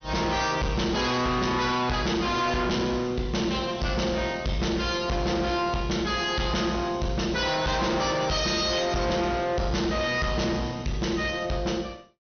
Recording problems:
low-pass filter; nothing above 6.3 kHz
distortion; hard clipping, uneven, signal-to-distortion ratio 6 dB

